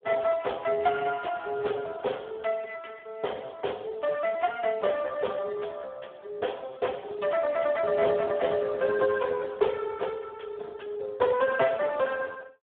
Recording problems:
phone line; 340 Hz to 3.5 kHz, Speex

